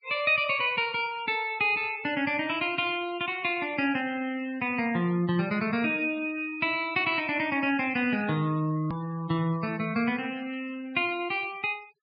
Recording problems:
low-pass filter; nothing above 5.5 kHz
denoising artefacts; signal-to-artefact ratio 21 dB
click at an edit; at 9 s

